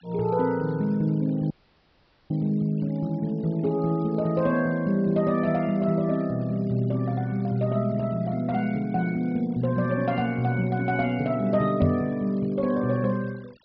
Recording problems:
low-pass filter; nothing above 5.5 kHz
denoising artefacts; signal-to-artefact ratio 27 dB
audio cutting out; at 1.5 s for 1 s
microphone thump; at 12 s; peak +6 dB vs average level

